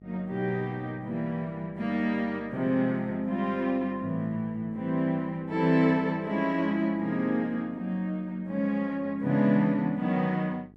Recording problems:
hum; 50 Hz, harmonics up to 850 Hz, SNR 24 dB

